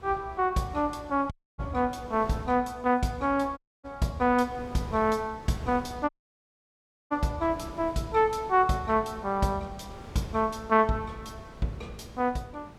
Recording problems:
wind on the microphone; below 650 Hz, SNR 19 dB
dropout; at 1.5 s, at 3.5 s and at 6 s for 1 s

